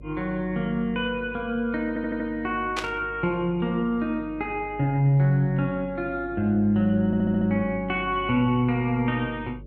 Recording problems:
hum; 50 Hz, harmonics up to 550 Hz, SNR 19 dB
stutter; at 2 s and at 7 s
burst of static; at 3 s; peak -1 dB vs average level

